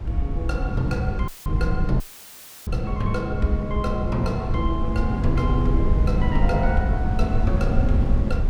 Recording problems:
low-frequency rumble; below 96 Hz, SNR 0 dB
dropout; at 1.5 s and at 2 s for 0.5 s; filled with static

